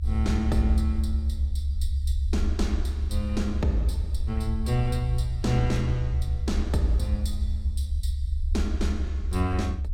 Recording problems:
low-frequency rumble; below 72 Hz, strongest tone 70 Hz, SNR -1 dB

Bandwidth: 16.5 kHz